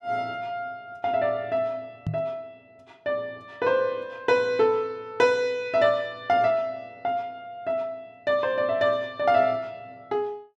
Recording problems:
microphone bump; at 2 s; peak 0 dB vs average level

